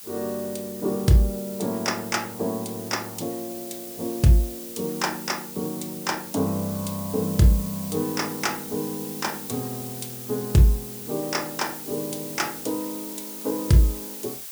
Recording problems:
background hiss; slope +3 dB per octave, SNR 10 dB

